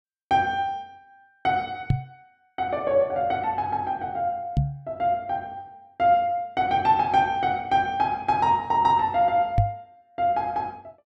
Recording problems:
knock on the microphone; at 2 s, at 4.5 s and at 9.5 s; peak +6 dB vs average level

